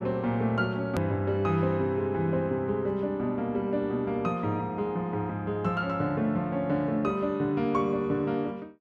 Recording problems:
edit click; at 1 s

